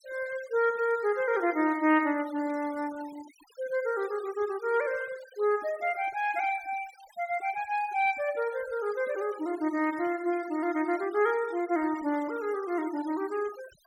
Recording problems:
denoising artefacts; signal-to-artefact ratio 20 dB

